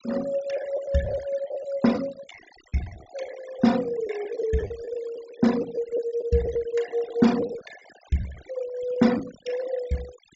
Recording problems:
low-pass filter; nothing above 8 kHz
noise reduction artefacts; signal-to-artefact ratio 15 dB
lost packets; 6% of the sound replaced, filled with the last packet

